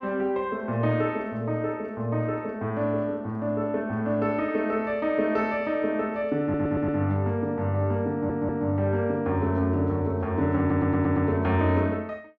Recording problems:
audio stuttering; at 6.5 s, at 8 s and at 11 s

